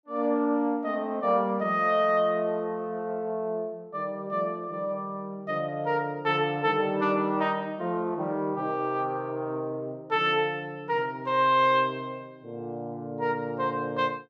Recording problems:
none

